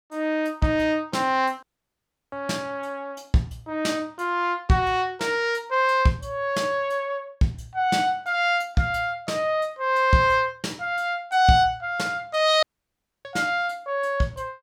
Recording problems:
dropout; at 1.5 s for 0.5 s and at 13 s for 0.5 s

